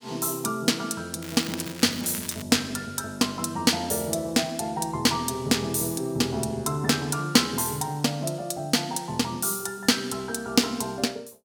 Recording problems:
crackle; from 1 to 2.5 s; loose cable, SNR 12 dB

